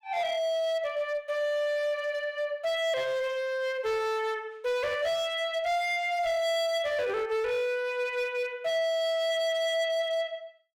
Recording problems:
distortion; hard clipping, signal-to-distortion ratio 10 dB

